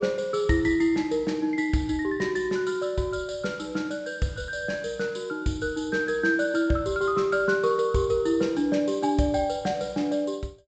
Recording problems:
treble cut off; nothing above 8 kHz

